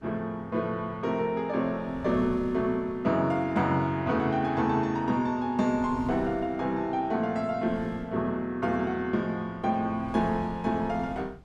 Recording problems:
wind noise; below 250 Hz, SNR 17 dB

